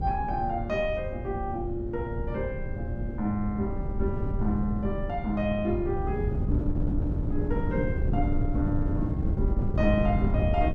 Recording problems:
electrical hum; 60 Hz, harmonics up to 540 Hz, SNR 22 dB
wind noise; below 140 Hz, SNR 0 dB

